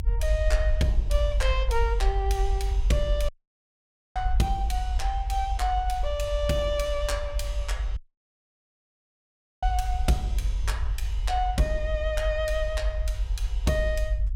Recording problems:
low-frequency rumble; below 54 Hz, SNR 0 dB
audio cutting out; at 3.5 s for 1 s and at 8 s for 1.5 s

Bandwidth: 17 kHz